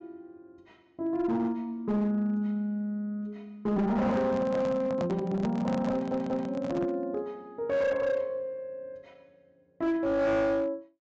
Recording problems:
low-pass filter; nothing above 8 kHz
distorted audio; hard clipping, signal-to-distortion ratio 11 dB
handling noise; from 4 to 7 s; peak -1 dB vs average level
audio stuttering; at 6 s

